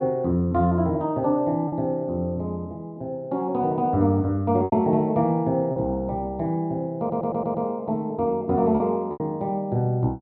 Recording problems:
packet loss; 3% of the sound replaced, filled with repeated pitch periods
stutter; at 7 s

